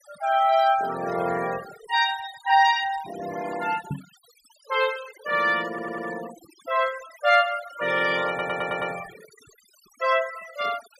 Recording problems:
noise reduction artefacts; signal-to-artefact ratio 16 dB
microphone bump; at 4 s; peak -3 dB vs average level
audio stuttering; at 5.5 s and at 8.5 s

